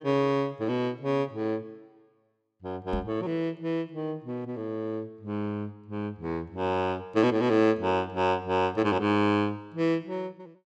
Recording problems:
microphone thump; at 3 s; peak -1 dB vs average level

